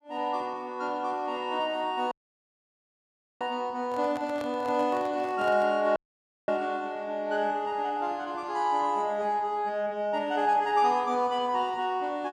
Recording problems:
audio cutting out; at 2 s for 1.5 s and at 6 s for 0.5 s
microphone handling noise; from 4 to 5.5 s; peak -7 dB vs average level

